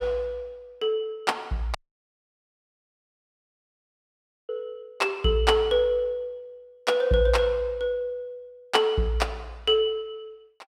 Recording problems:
dropout; at 2 s for 2.5 s

